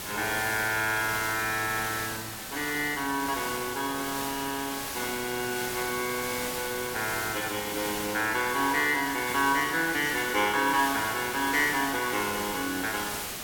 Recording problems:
hiss; slope -2 dB per octave, SNR 6 dB

